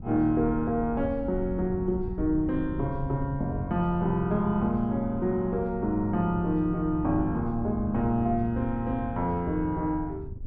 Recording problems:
wind noise; below 110 Hz, SNR 11 dB

